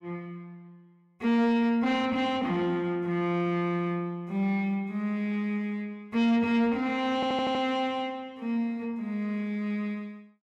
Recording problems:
distorted audio; soft clipping, signal-to-distortion ratio 11 dB
audio stuttering; at 7 s

